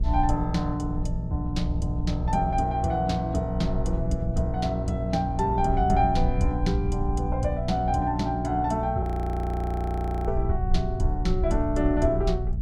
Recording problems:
hum; 60 Hz, harmonics up to 420 Hz, SNR 4 dB
wind noise; below 62 Hz, SNR 5 dB
audio freezing; at 9 s for 1.5 s

